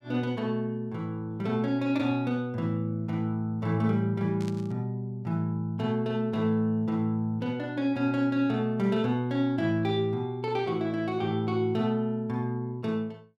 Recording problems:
static burst; at 4.5 s; peak -13 dB vs average level

